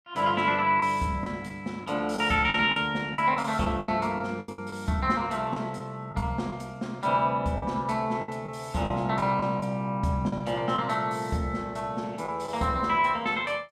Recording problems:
lost packets; 7% of the sound replaced, filled with the last packet

